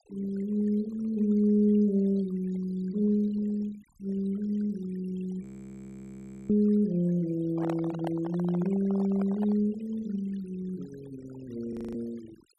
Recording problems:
noise reduction artefacts; signal-to-artefact ratio 22 dB
audio freezing; at 5.5 s for 1 s and at 12 s
microphone handling noise; from 7.5 to 9.5 s; peak -4 dB vs average level

